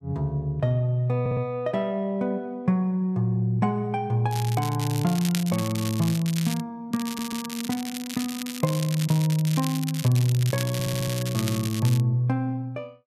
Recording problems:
stutter; at 1 s, at 7 s and at 11 s
crackling; from 4.5 to 6.5 s and from 7 to 12 s; loose cable, SNR 10 dB

